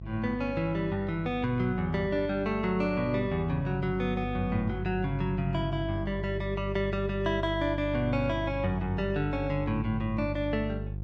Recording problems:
hum; 50 Hz, harmonics up to 500 Hz, SNR 7 dB

